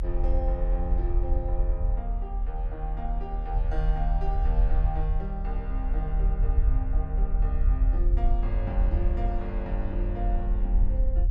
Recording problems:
low-frequency rumble; below 48 Hz, strongest tone 38 Hz, SNR -8 dB

